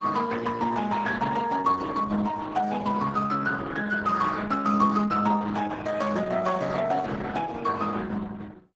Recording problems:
lossy compression; Speex, then Opus, log-spectral distance 4 dB, nothing above 7.3 kHz

